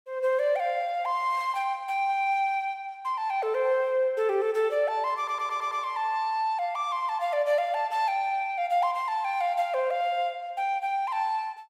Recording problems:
audio stuttering; at 5 s

